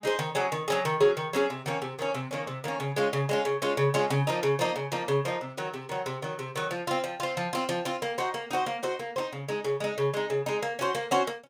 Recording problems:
none

